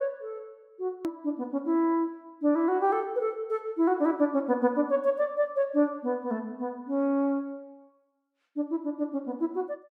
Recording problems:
hard cut with a click; at 1 s

